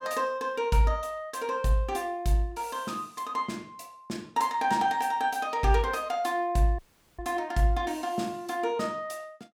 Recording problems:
dropout; at 7 s

